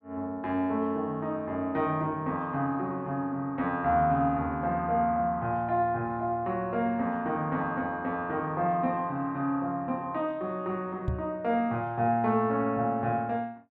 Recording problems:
knock on the microphone; at 11 s; peak +2 dB vs average level

